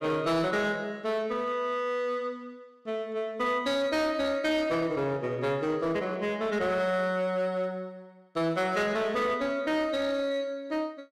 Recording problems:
distortion; hard clipping, uneven, signal-to-distortion ratio 12 dB

